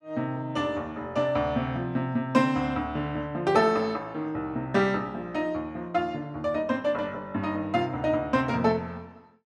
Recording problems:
none

